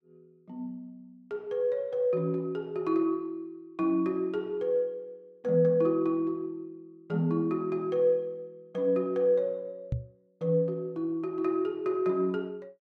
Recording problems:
microphone bump; at 10 s; peak +2 dB vs average level

